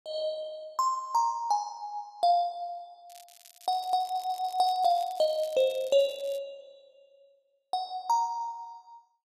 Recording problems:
crackle; from 3 to 6.5 s; loose cable, SNR 22 dB
stutter; at 4 s

